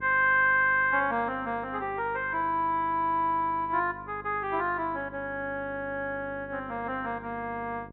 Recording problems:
treble cut off; nothing above 4 kHz
hum; 50 Hz, harmonics up to 1.1 kHz, SNR 20 dB

